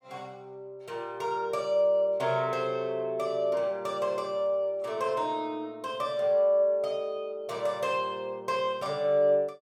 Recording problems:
none

